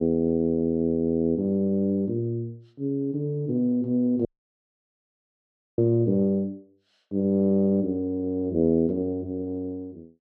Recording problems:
dropout; at 4.5 s for 1.5 s

